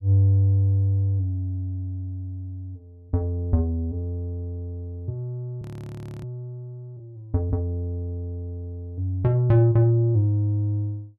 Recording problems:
audio freezing; at 5.5 s for 0.5 s

